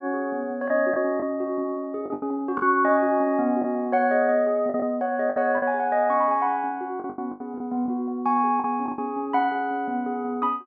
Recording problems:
lost packets; 7% of the sound replaced, filled with the last packet

